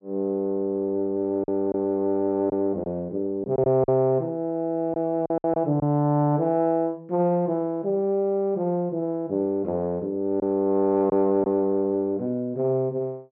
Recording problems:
lost packets; 3% of the sound replaced, filled with silence

